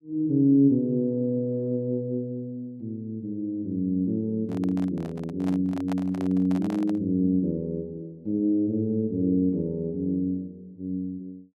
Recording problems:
handling noise; from 4.5 to 7 s; peak -6 dB vs average level

